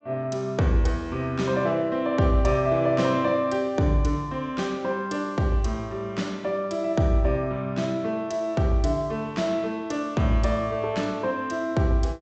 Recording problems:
treble missing; nothing above 8 kHz

